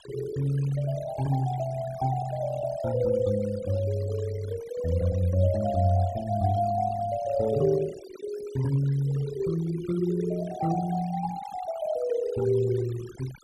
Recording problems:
noise reduction artefacts; signal-to-artefact ratio 18 dB

